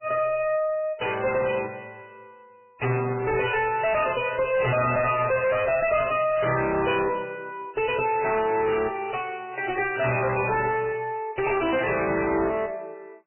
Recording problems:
lossy codec; MP3, log-spectral distance 6 dB, nothing above 2.7 kHz
distortion; hard clipping, uneven, signal-to-distortion ratio 6 dB
crackle; from 4.5 to 6 s; loose cable, SNR 25 dB

